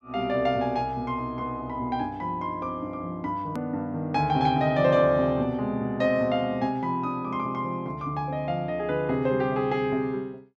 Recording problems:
edit click; at 3.5 s

